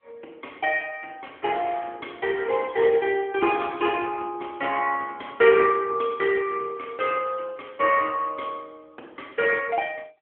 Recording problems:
phone line; 280 Hz to 3.3 kHz, AMR-NB

